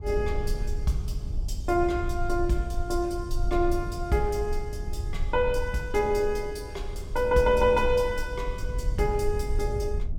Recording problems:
low-frequency rumble; below 62 Hz, strongest tone 20 Hz, SNR 7 dB

